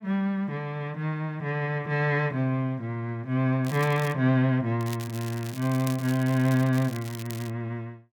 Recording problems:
crackle; at 3.5 s and from 5 to 7.5 s; loose cable, SNR 16 dB

